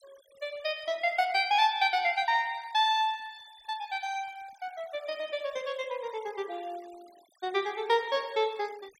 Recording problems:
denoising artefacts; signal-to-artefact ratio 25 dB

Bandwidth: 16 kHz